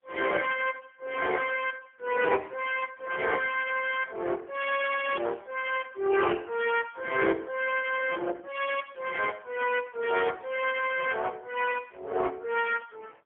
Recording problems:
telephone audio; 300 Hz to 3.3 kHz, AMR-NB, then MP3

